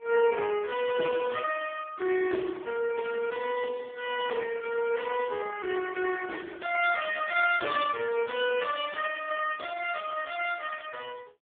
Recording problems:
phone line; 260 Hz to 3.4 kHz, AMR-NB

